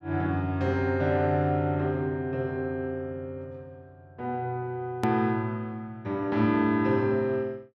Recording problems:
edit click; at 5 s

